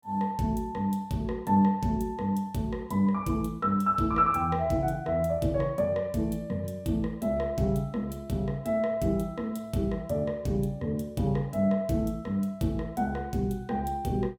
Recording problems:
none

